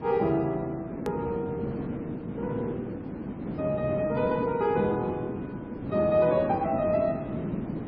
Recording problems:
codec artefacts; MP3, log-spectral distance 2 dB
hiss; slope -12 dB per octave, SNR 6 dB
hard cut with a click; at 1 s

